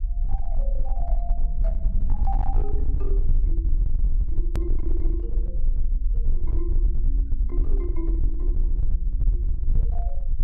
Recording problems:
distorted audio; hard clipping, signal-to-distortion ratio 10 dB
low-frequency rumble; below 44 Hz, strongest tone 20 Hz, SNR -13 dB
click at an edit; at 4.5 s

